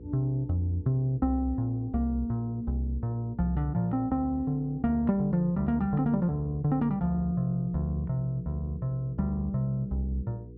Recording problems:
electrical hum; 60 Hz, harmonics up to 480 Hz, SNR 18 dB

